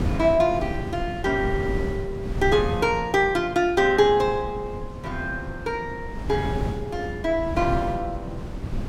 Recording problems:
wind on the microphone; below 220 Hz, SNR 9 dB

